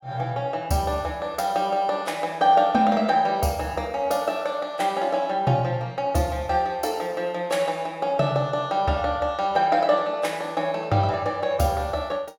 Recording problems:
none

